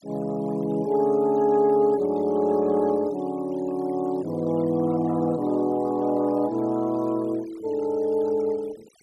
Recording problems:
noise reduction artefacts; signal-to-artefact ratio 25 dB

